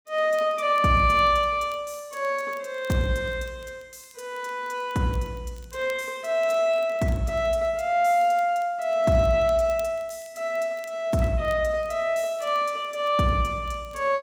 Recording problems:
crackle; vinyl, SNR 29 dB

